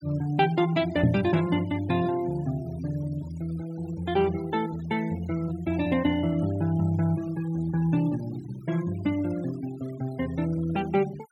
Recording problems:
denoising artefacts; signal-to-artefact ratio 20 dB
microphone bump; at 1 s; peak +8 dB vs average level

